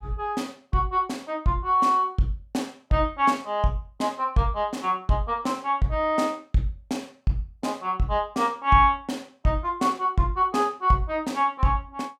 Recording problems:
none

